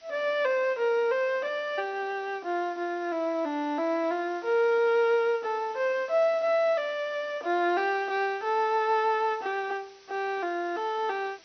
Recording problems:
treble missing; nothing above 6.1 kHz
hiss; slope +1 dB per octave, SNR 27 dB

